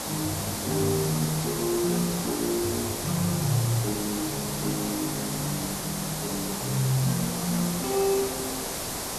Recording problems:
background hiss; SNR 2 dB

